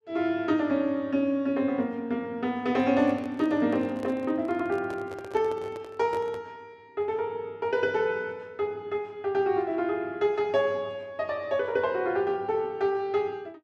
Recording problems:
microphone handling noise; from 2.5 to 6.5 s; peak -7 dB vs average level

